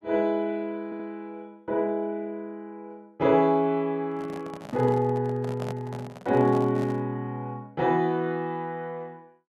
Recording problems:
stutter; at 1 s
handling noise; from 4 to 7 s; peak -7 dB vs average level

